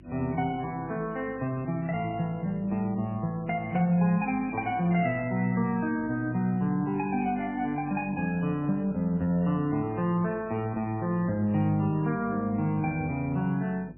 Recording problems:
lossy codec; MP3, log-spectral distance 2 dB, nothing above 2.5 kHz
hum; 50 Hz, harmonics up to 350 Hz, SNR 24 dB

